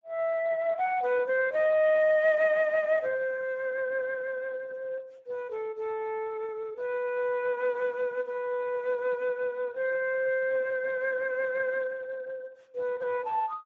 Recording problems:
lossy codec; Speex, log-spectral distance 2 dB

